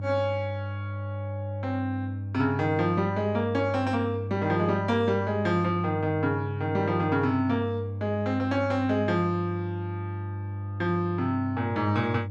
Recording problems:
hum; 50 Hz, harmonics up to 500 Hz, SNR 6 dB

